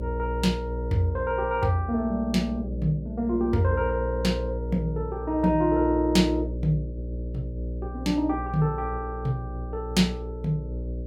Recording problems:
hum; 60 Hz, harmonics up to 600 Hz, SNR 7 dB

